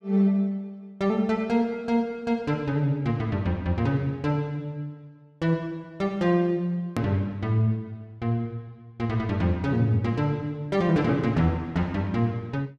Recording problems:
click at an edit; at 7 s

